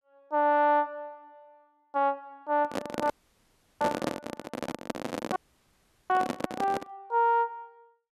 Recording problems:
microphone handling noise; from 2.5 to 7 s; peak +3 dB vs average level
dropout; at 3 s for 0.5 s and at 5.5 s for 0.5 s

